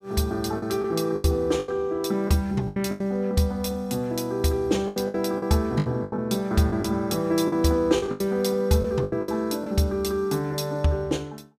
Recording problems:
packet loss; 10% of the sound replaced, filled with the last packet

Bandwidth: 15.5 kHz